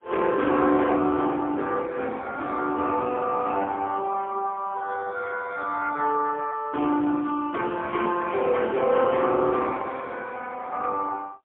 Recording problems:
telephone audio; 260 Hz to 3.4 kHz, AMR-NB, then MP3

